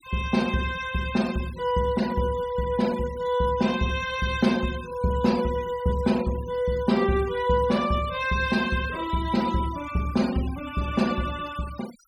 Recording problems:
noise reduction artefacts; signal-to-artefact ratio 18 dB

